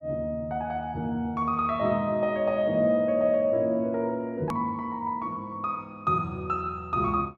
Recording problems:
click at an edit; at 4.5 s

